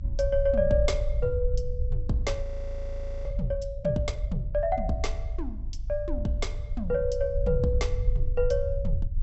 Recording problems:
treble missing; nothing above 7.8 kHz
rumble; below 66 Hz, SNR 3 dB
audio freezing; at 2.5 s for 1 s

